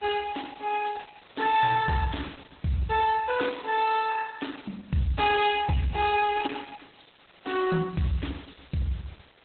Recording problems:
lossy compression; Opus, log-spectral distance 11 dB, nothing above 4 kHz
distortion; hard clipping, uneven, signal-to-distortion ratio 11 dB
hiss; SNR 28 dB

